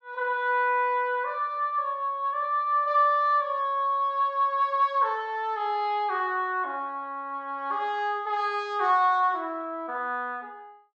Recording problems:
none

